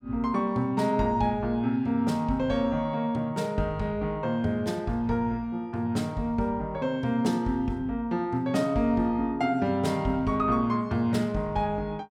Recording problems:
none

